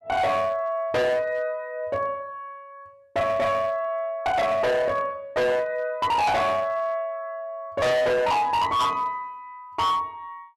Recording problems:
distortion; hard clipping, uneven, signal-to-distortion ratio 6 dB

